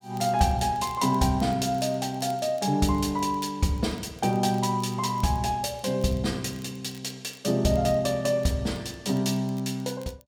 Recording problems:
crackle; vinyl, SNR 27 dB

